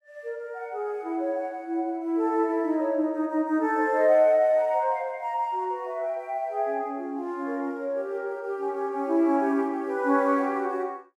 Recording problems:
none

